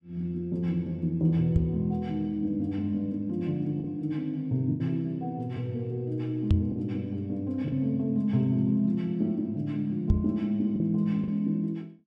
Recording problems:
lost packets; 2% of the sound replaced, filled with the last packet
knock on the microphone; at 1.5 s, at 6.5 s and at 10 s; peak +9 dB vs average level

